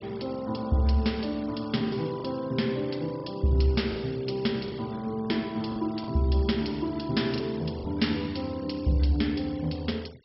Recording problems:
treble cut off; nothing above 5.5 kHz
noise reduction artefacts; signal-to-artefact ratio 23 dB
packet loss; 4% of the sound replaced, filled with the last packet

